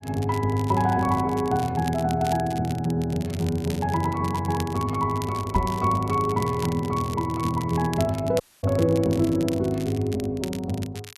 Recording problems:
crackle; vinyl, SNR 17 dB
microphone thump; at 5.5 s; peak +2 dB vs average level
audio cutting out; at 8.5 s

